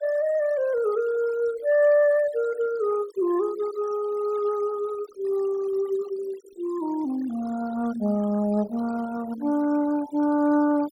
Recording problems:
denoising artefacts; signal-to-artefact ratio 22 dB

